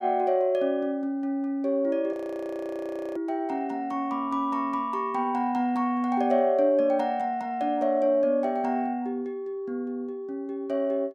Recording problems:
frozen audio; at 2 s for 1 s

